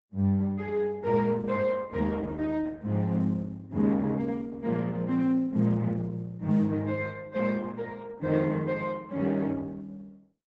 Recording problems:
lossy codec; Opus, log-spectral distance 2 dB, nothing above 7.6 kHz

